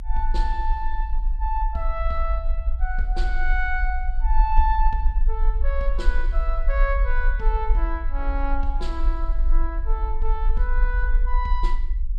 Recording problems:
low-frequency rumble; below 42 Hz, strongest tone 22 Hz, SNR -4 dB

